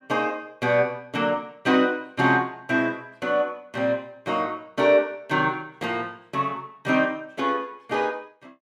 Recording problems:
none

